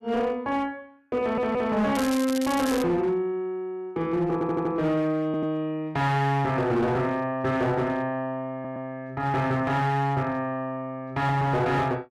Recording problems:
distortion; hard clipping, signal-to-distortion ratio 11 dB
stutter; 4 times, first at 1 s
crackling; at 2 s; loose cable, SNR 11 dB

